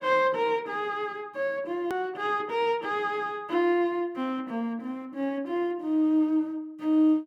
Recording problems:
click at an edit; at 2 s

